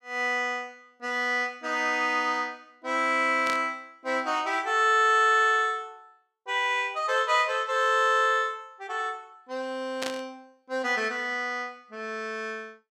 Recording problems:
burst of static; at 3.5 s and at 10 s; peak -3 dB vs average level

